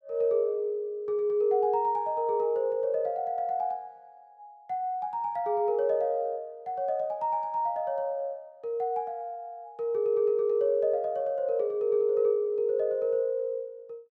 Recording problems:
none

